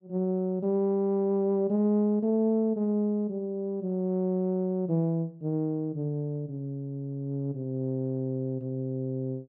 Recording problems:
none

